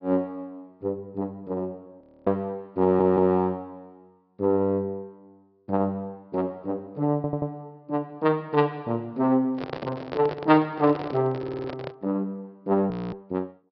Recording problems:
low-pass filter; nothing above 5.5 kHz
audio freezing; at 2 s and at 13 s
audio stuttering; at 3 s, at 7 s and at 11 s
handling noise; from 9.5 to 12 s; peak -2 dB vs average level

